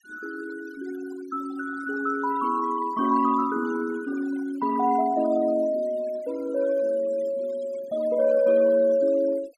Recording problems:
noise reduction artefacts; signal-to-artefact ratio 20 dB

